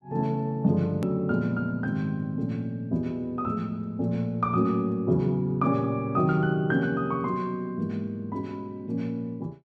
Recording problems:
edit click; at 1 s

